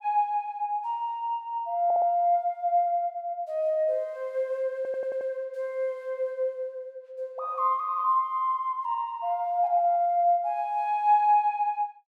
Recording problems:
audio stuttering; at 2 s and at 5 s

